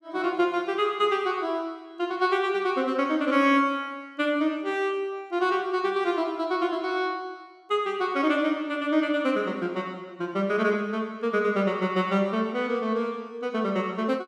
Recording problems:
none

